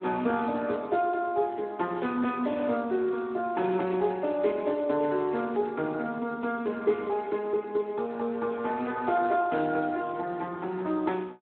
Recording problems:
telephone audio; 190 Hz to 3.6 kHz, Speex

